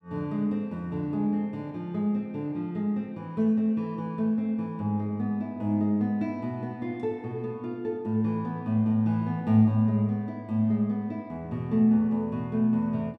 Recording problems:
none

